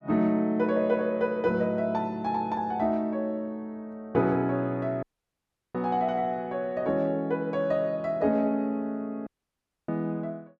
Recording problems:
audio cutting out; at 5 s for 0.5 s and at 9.5 s for 0.5 s

